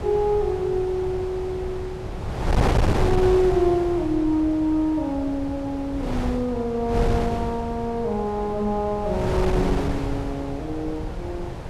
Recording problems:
wind noise; below 450 Hz, SNR 4 dB

